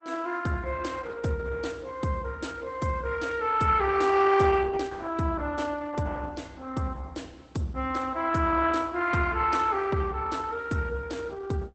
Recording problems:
lossy compression; Opus, log-spectral distance 4 dB, nothing above 8 kHz

